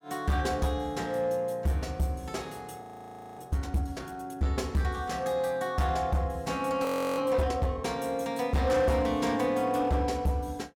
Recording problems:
distorted audio; hard clipping, signal-to-distortion ratio 12 dB
audio freezing; at 3 s for 0.5 s and at 7 s

